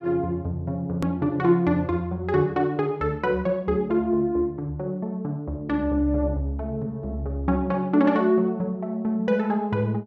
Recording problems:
hard cut with a click; at 1 s

